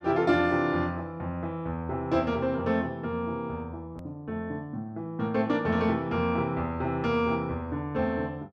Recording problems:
click at an edit; at 4 s

